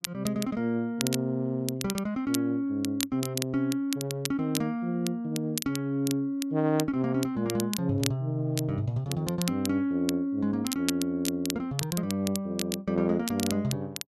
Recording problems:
crackle; vinyl, SNR 8 dB

